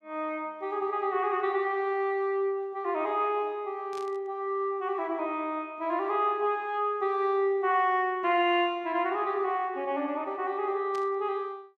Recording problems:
static burst; at 4 s and at 11 s; peak -14 dB vs average level

